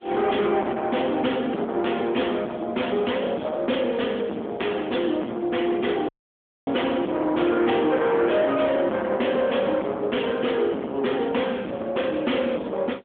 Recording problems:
telephone audio; 170 Hz to 3.4 kHz, AMR-NB
distortion; soft clipping, signal-to-distortion ratio 5 dB
audio cutting out; at 6 s for 0.5 s

